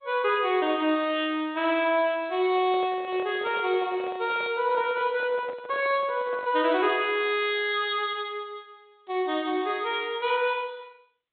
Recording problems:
low-pass filter; nothing above 3.8 kHz
lossy compression; G.722, log-spectral distance 4 dB
microphone handling noise; from 2.5 to 6.5 s; peak -10 dB vs average level

